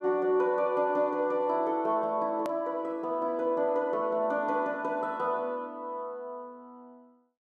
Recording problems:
edit click; at 2.5 s

